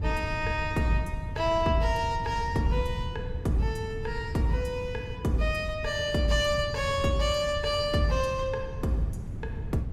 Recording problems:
wind noise; below 130 Hz, SNR 8 dB

